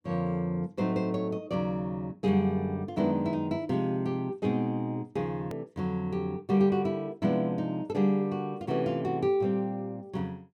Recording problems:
click at an edit; at 5.5 s

